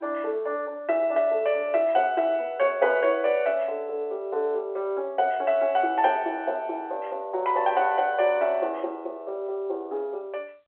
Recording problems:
telephone audio; 340 Hz to 3.3 kHz, G.711

